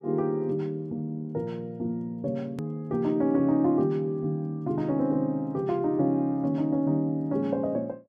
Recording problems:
hard cut with a click; at 2.5 s

